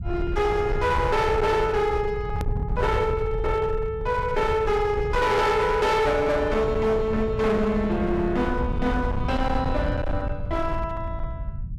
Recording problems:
distortion; hard clipping, uneven, signal-to-distortion ratio 8 dB
low-frequency rumble; below 120 Hz, SNR 7 dB
edit click; at 2.5 s

